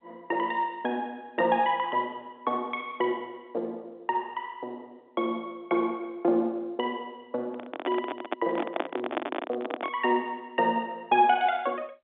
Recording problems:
telephone audio; 260 Hz to 3.6 kHz, G.711
microphone handling noise; from 7.5 to 10 s; peak +4 dB vs average level

